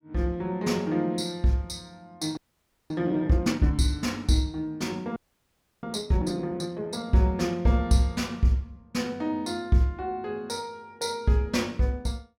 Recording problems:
frozen audio; at 2.5 s for 0.5 s and at 5 s for 0.5 s

